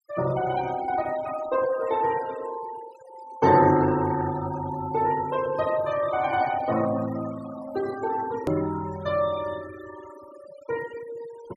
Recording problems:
denoising artefacts; signal-to-artefact ratio 16 dB
click at an edit; at 8.5 s

